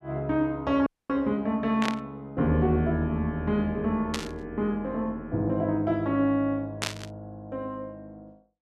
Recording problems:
audio cutting out; at 1 s
static burst; at 2 s, at 4 s and at 7 s; peak +3 dB vs average level

